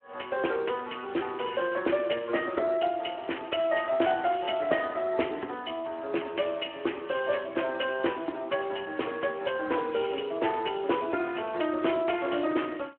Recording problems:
telephone audio; 260 Hz to 3.2 kHz, Speex

